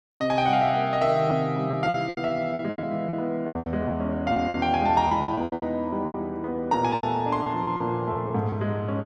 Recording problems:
lost packets; 15% of the sound replaced, filled with repeated pitch periods

